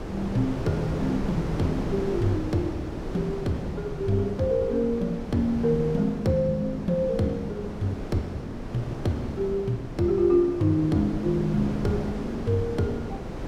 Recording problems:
wind on the microphone; below 460 Hz, SNR 8 dB

